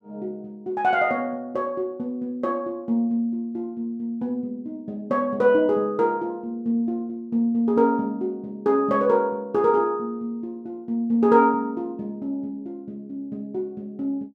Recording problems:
none

